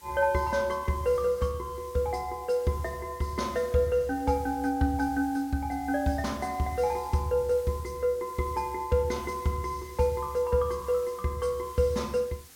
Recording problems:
background hiss; SNR 22 dB

